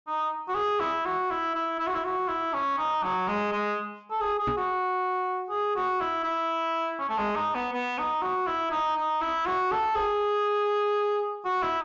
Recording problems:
low-pass filter; nothing above 7.3 kHz
distortion; soft clipping, signal-to-distortion ratio 10 dB
microphone bump; at 4.5 s; peak +1 dB vs average level

